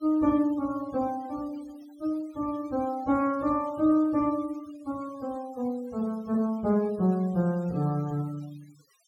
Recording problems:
noise reduction artefacts; signal-to-artefact ratio 25 dB

